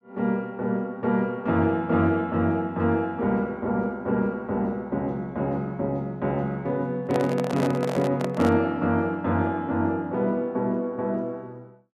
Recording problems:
handling noise; from 7 to 8.5 s; peak -1 dB vs average level

